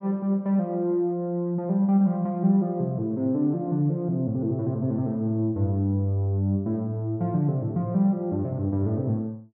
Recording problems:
none

